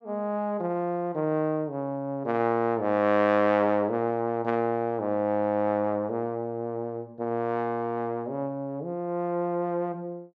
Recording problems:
none

